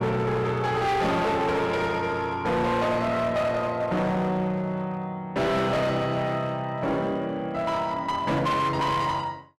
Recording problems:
distorted audio; hard clipping, uneven, signal-to-distortion ratio 7 dB

